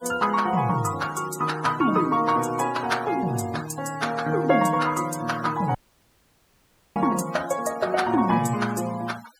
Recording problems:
noise reduction artefacts; signal-to-artefact ratio 17 dB
dropout; at 6 s for 1 s

